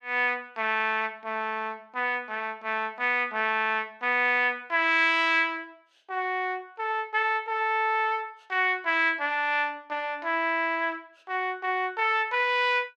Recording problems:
none

